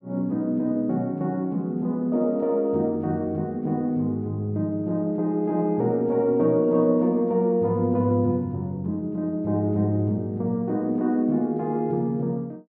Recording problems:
none

